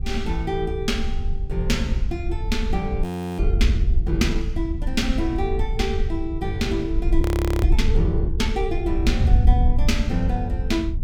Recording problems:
wind noise; below 70 Hz, SNR -2 dB
audio freezing; at 3 s and at 7 s

